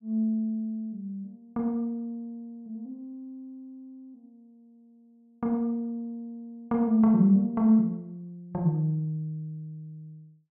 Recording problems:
none

